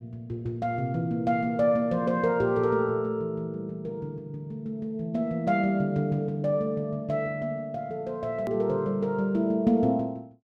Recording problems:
hard cut with a click; at 8.5 s

